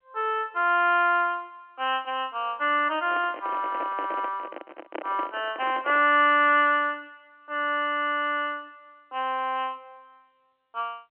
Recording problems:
phone line; 260 Hz to 3.2 kHz, G.711
microphone handling noise; from 3 to 6 s; peak -6 dB vs average level

